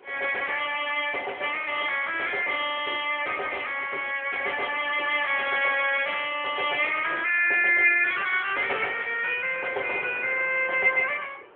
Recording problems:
telephone audio; 320 Hz to 3.4 kHz, AMR-NB
wind on the microphone; below 1.3 kHz, SNR 24 dB

